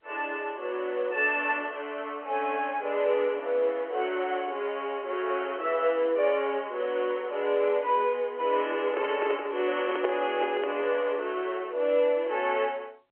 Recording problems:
phone line; 300 Hz to 3.3 kHz, G.711
microphone handling noise; from 8.5 to 11 s; peak +1 dB vs average level

